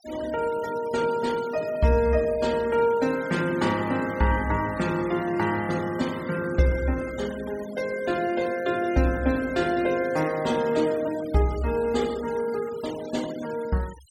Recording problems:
noise reduction artefacts; signal-to-artefact ratio 18 dB

